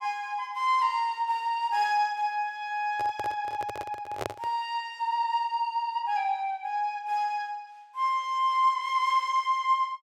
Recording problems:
handling noise; from 3 to 4.5 s; peak -1 dB vs average level

